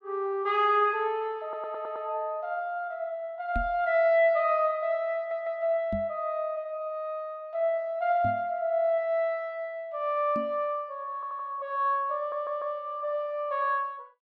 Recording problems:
audio stuttering; 4 times, first at 1.5 s
knock on the microphone; 4 times, first at 3.5 s; peak -1 dB vs average level

